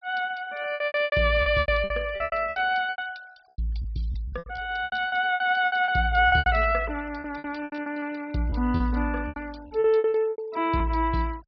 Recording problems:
treble missing; nothing above 5.5 kHz
noise reduction artefacts; signal-to-artefact ratio 26 dB
lost packets; 18% of the sound replaced, filled with repeated pitch periods

